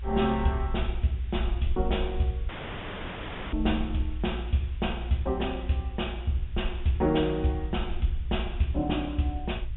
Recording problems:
treble missing; nothing above 3.7 kHz
hiss; SNR 27 dB
rumble; below 60 Hz, strongest tone 58 Hz, SNR 5 dB
audio cutting out; at 2.5 s for 1 s

